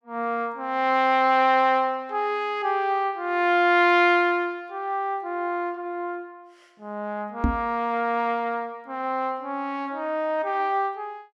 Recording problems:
microphone bump; at 7.5 s; peak +4 dB vs average level

